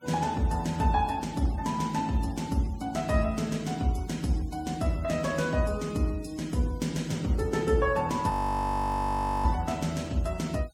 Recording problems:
noise reduction artefacts; signal-to-artefact ratio 21 dB
audio freezing; at 8.5 s for 1 s

